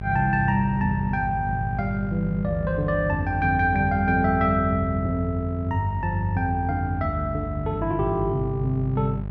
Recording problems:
electrical hum; 50 Hz, harmonics up to 650 Hz, SNR 8 dB

